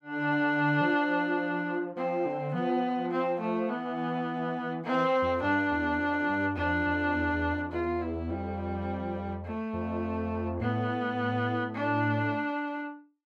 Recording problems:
none

